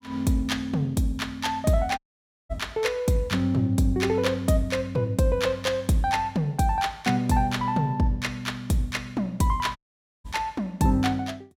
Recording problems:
dropout; at 2 s for 0.5 s and at 10 s

